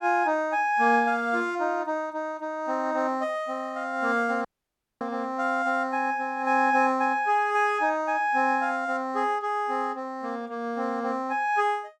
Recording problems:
audio cutting out; at 4.5 s for 0.5 s

